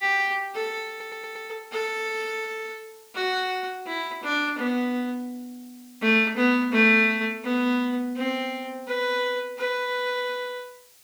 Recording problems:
hiss; slope +2 dB per octave, SNR 27 dB
audio stuttering; at 1 s

